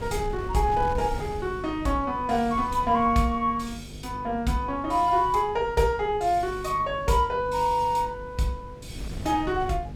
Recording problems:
hum; 50 Hz, harmonics up to 500 Hz, SNR 18 dB
wind noise; below 170 Hz, SNR 15 dB

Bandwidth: 17 kHz